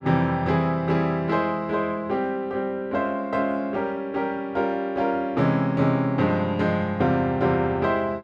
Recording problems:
none

